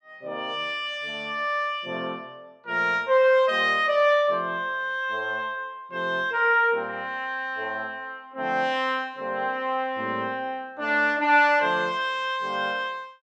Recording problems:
none

